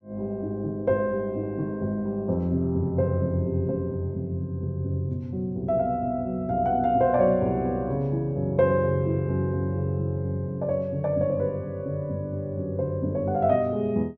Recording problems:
none

